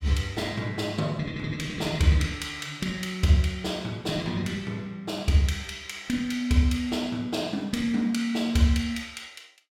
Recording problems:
none

